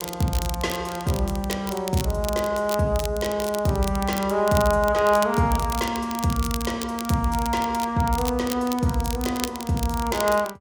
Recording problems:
crackling; vinyl, SNR 11 dB

